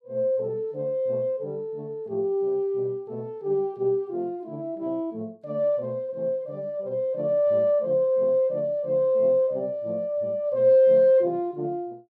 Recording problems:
none

